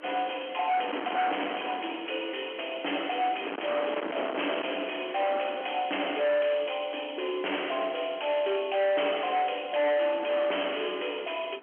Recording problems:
telephone audio; 240 Hz to 3.2 kHz, G.711
distortion; hard clipping, signal-to-distortion ratio 7 dB
wind on the microphone; below 1.6 kHz, SNR 8 dB

